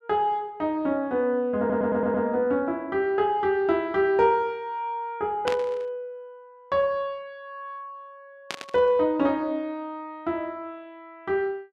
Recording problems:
stutter; at 1.5 s
burst of static; at 5.5 s and at 8.5 s; peak 0 dB vs average level

